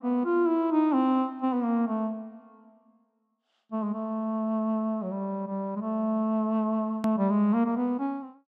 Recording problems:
click at an edit; at 7 s

